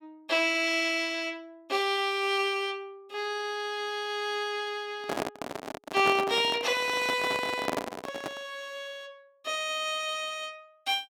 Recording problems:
handling noise; from 5 to 8.5 s; peak +3 dB vs average level

